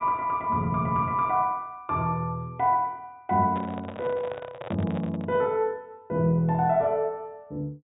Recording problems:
treble cut off; nothing above 4 kHz
microphone handling noise; from 3.5 to 5.5 s; peak -6 dB vs average level

